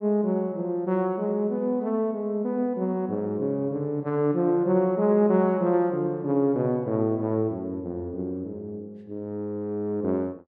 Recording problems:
none

